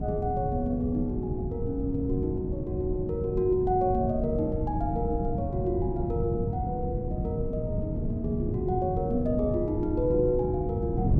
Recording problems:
wind noise; below 190 Hz, SNR 2 dB

